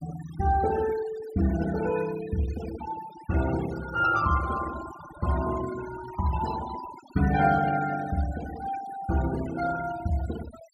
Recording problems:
noise reduction artefacts; signal-to-artefact ratio 12 dB

